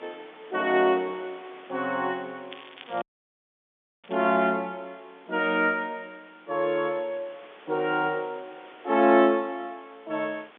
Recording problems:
telephone audio; 240 Hz to 3.7 kHz, G.711
hiss; SNR 25 dB
crackle; from 2.5 to 4 s; loose cable, SNR 22 dB
audio cutting out; at 3 s for 1 s

